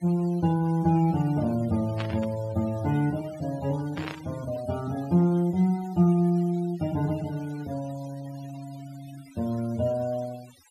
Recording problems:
denoising artefacts; signal-to-artefact ratio 21 dB
static burst; at 2 s and at 4 s; peak -5 dB vs average level

